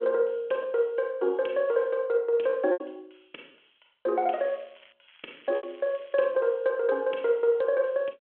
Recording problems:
telephone audio; 300 Hz to 3.6 kHz, G.726
lost packets; 3% of the sound replaced, filled with repeated pitch periods
crackle; at 4.5 s and from 5 to 6 s; loose cable, SNR 28 dB

